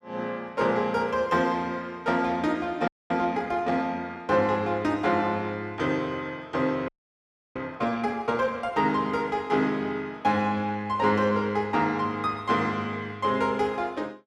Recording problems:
audio freezing; at 3 s and at 7 s for 0.5 s

